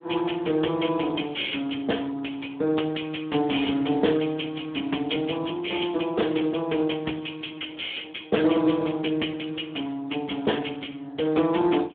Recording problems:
phone line; 240 Hz to 3.6 kHz, Speex

